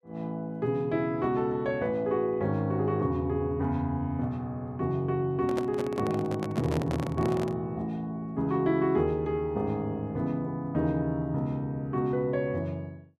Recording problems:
microphone handling noise; from 5.5 to 7.5 s; peak -1 dB vs average level

